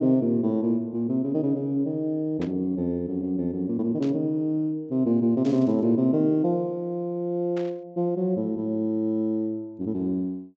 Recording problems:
low-pass filter; nothing above 8 kHz
static burst; 4 times, first at 2.5 s; peak -12 dB vs average level

